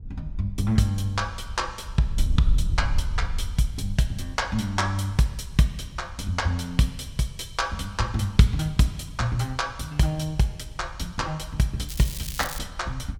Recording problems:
wind on the microphone; below 68 Hz, SNR 9 dB
crackling; at 12 s; loose cable, SNR 9 dB

